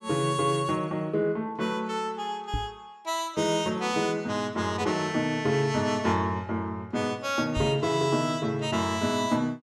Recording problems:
microphone bump; at 2.5 s and at 7.5 s; peak -1 dB vs average level

